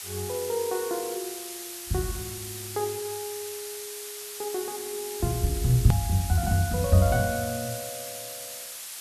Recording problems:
hiss; slope +3 dB per octave, SNR 8 dB
edit click; at 6 s

